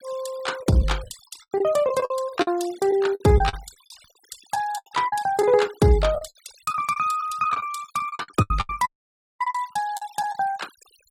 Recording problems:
noise reduction artefacts; signal-to-artefact ratio 19 dB
packet loss; 14% of the sound replaced, filled with the last packet
audio cutting out; at 9 s for 0.5 s

